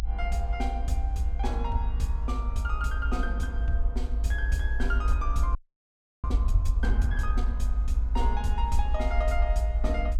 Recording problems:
rumble; below 54 Hz, SNR -4 dB
frozen audio; at 5.5 s for 0.5 s

